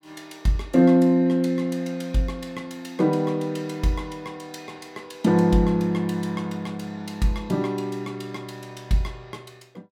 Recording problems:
none

